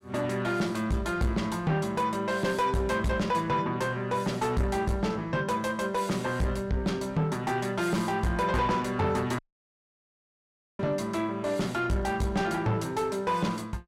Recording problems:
distorted audio; soft clipping, signal-to-distortion ratio 10 dB
dropout; at 9.5 s for 1.5 s

